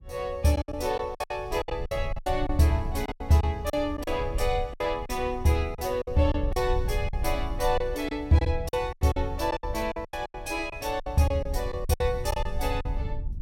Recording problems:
rumble; below 76 Hz, SNR 8 dB
lost packets; 13% of the sound replaced, filled with silence

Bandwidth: 16 kHz